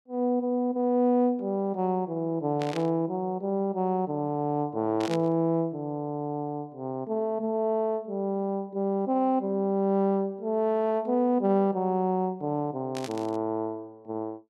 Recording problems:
burst of static; at 2.5 s, at 5 s and at 13 s; peak -6 dB vs average level

